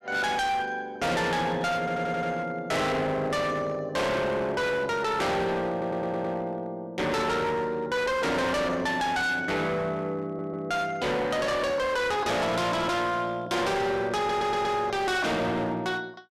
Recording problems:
distortion; hard clipping, uneven, signal-to-distortion ratio 6 dB
stutter; 4 times, first at 2 s

